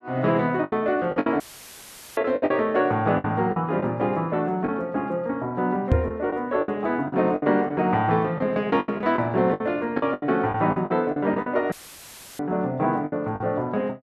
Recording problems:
packet loss; 11% of the sound replaced, filled with the last packet
audio cutting out; at 1.5 s for 1 s and at 12 s for 0.5 s; filled with static
knock on the microphone; at 6 s; peak +7 dB vs average level

